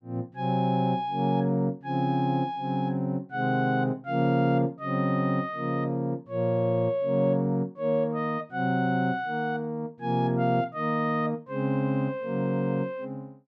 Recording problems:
none

